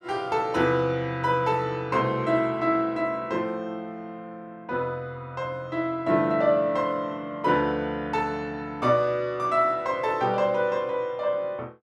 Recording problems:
none

